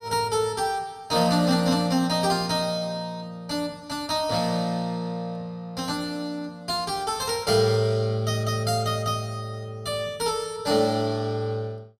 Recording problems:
none

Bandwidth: 14.5 kHz